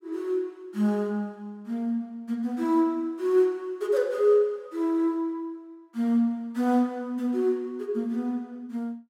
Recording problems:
none

